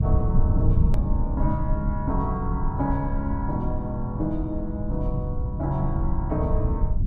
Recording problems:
low-frequency rumble; below 100 Hz, SNR -2 dB
edit click; at 1 s

